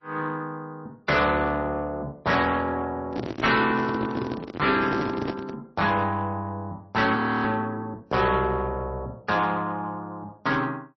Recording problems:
lossy compression; MP3, then AAC, log-spectral distance 2 dB, nothing above 5.8 kHz
distorted audio; soft clipping, signal-to-distortion ratio 11 dB
handling noise; from 3 to 5.5 s; peak +1 dB vs average level
audio freezing; at 7 s

